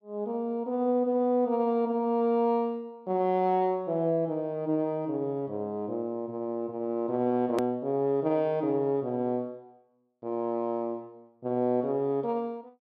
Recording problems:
click at an edit; at 7.5 s

